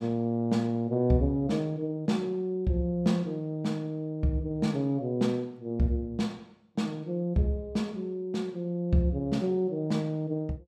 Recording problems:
none

